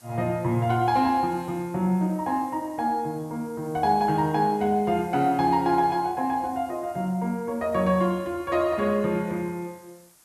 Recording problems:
background hiss; SNR 27 dB

